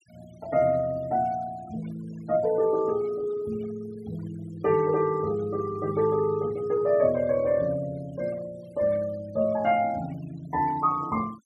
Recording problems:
noise reduction artefacts; signal-to-artefact ratio 23 dB

